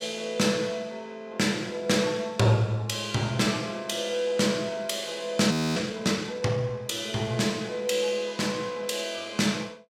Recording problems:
audio freezing; at 5.5 s

